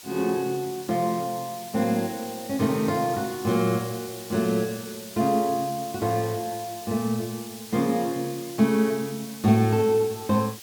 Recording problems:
background hiss; slope +2 dB per octave, SNR 14 dB

